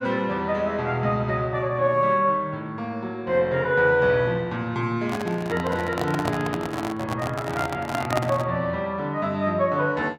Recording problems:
microphone handling noise; from 5 to 8.5 s; peak +3 dB vs average level

